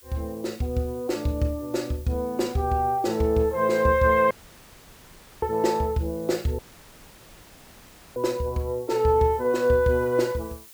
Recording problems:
hiss; slope +2 dB per octave, SNR 24 dB
audio cutting out; at 4.5 s for 1 s and at 6.5 s for 1.5 s

